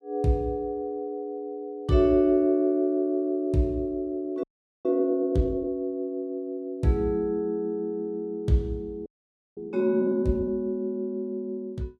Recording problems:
frozen audio; at 4.5 s and at 9 s for 0.5 s

